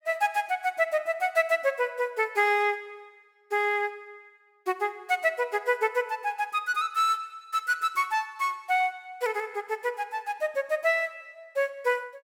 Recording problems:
none

